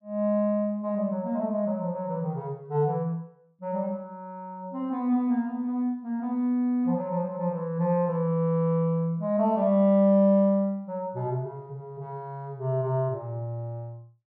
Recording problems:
none

